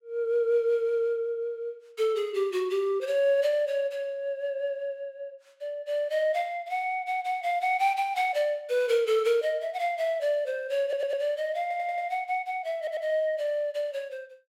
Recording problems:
stutter; at 11 s, at 12 s and at 13 s

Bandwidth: 16 kHz